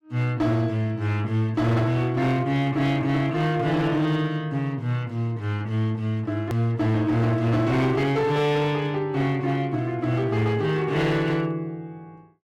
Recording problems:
distorted audio; hard clipping, signal-to-distortion ratio 12 dB
hard cut with a click; at 6.5 s

